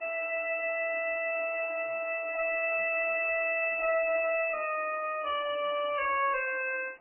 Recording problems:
lossy compression; MP3, log-spectral distance 5 dB, nothing above 2.7 kHz
distorted audio; soft clipping, signal-to-distortion ratio 9 dB
hiss; SNR 28 dB

